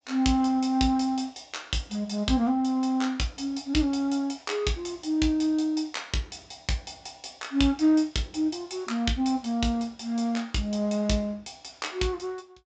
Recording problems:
treble missing; nothing above 8 kHz

